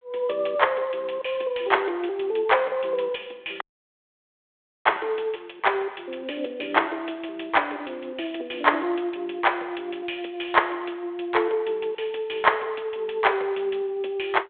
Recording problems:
telephone audio; 320 Hz to 3.5 kHz, G.726
audio cutting out; at 3.5 s for 1 s

